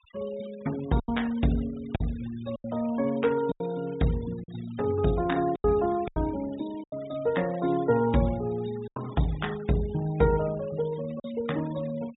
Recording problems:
low-pass filter; nothing above 4 kHz
denoising artefacts; signal-to-artefact ratio 20 dB
packet loss; 6% of the sound replaced, filled with silence

